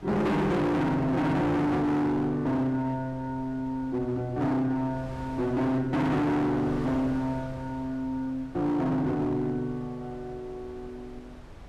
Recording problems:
distortion; hard clipping, signal-to-distortion ratio 6 dB
wind on the microphone; below 560 Hz, SNR 18 dB

